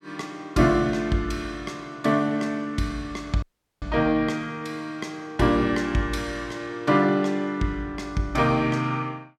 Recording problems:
dropout; at 3.5 s

